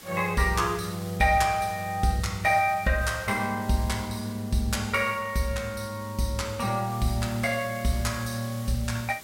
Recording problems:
hiss; slope -1 dB per octave, SNR 18 dB

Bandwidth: 16 kHz